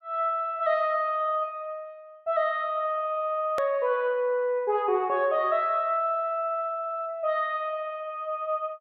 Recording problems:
edit click; at 3.5 s

